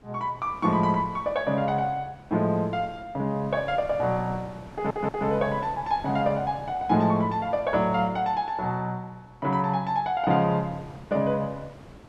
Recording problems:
wind on the microphone; below 710 Hz, SNR 20 dB
stutter; at 4.5 s

